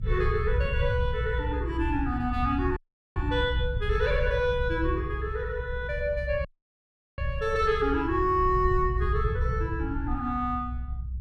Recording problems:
rumble; below 94 Hz, SNR 3 dB
audio cutting out; at 3 s and at 6.5 s for 0.5 s

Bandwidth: 13.5 kHz